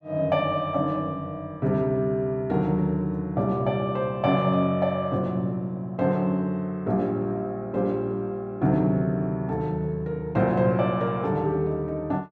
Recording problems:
none

